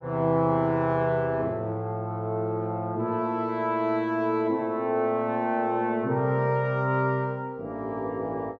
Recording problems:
none

